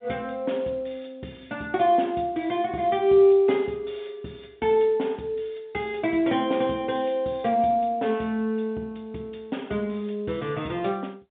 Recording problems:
phone line; 130 Hz to 3.7 kHz, G.711

